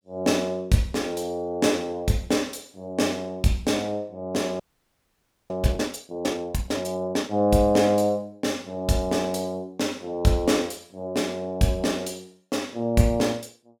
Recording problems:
frozen audio; at 4.5 s for 1 s

